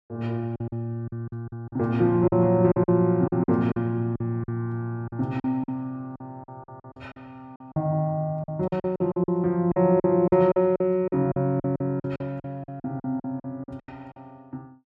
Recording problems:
packet loss; 15% of the sound replaced, filled with silence

